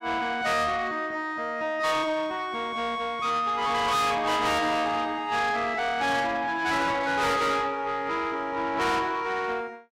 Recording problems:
distortion; soft clipping, signal-to-distortion ratio 6 dB

